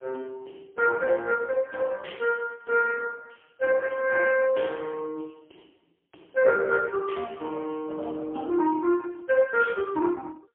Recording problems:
telephone audio; 280 Hz to 3.2 kHz, AMR-NB, then MP3

